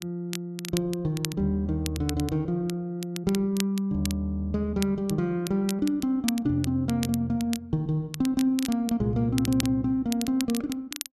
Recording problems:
crackling; vinyl, SNR 12 dB

